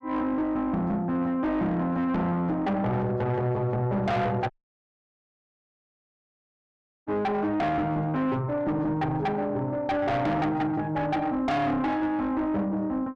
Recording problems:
distorted audio; soft clipping, signal-to-distortion ratio 7 dB
dropout; at 4.5 s for 2.5 s

